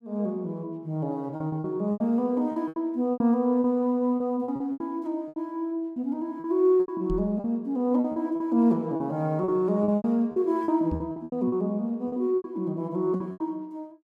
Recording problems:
lost packets; 13% of the sound replaced, filled with repeated pitch periods
microphone thump; at 7 s and at 11 s; peak -2 dB vs average level

